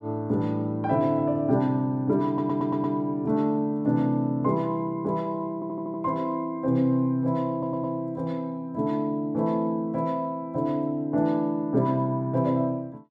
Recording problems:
stutter; at 2.5 s, at 5.5 s and at 7.5 s

